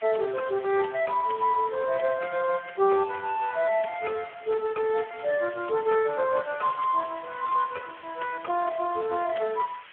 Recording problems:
telephone audio; 340 Hz to 2.3 kHz, Speex
hiss; SNR 20 dB

